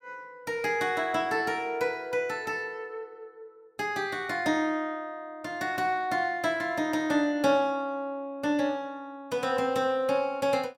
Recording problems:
none

